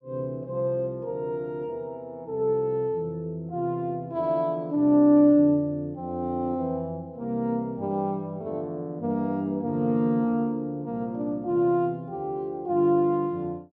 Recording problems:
none

